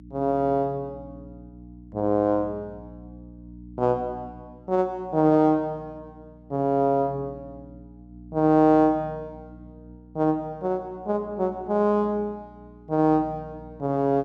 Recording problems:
hum; 60 Hz, harmonics up to 300 Hz, SNR 22 dB

